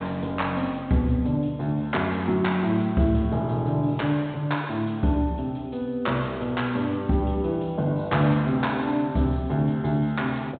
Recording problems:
treble missing; nothing above 4 kHz

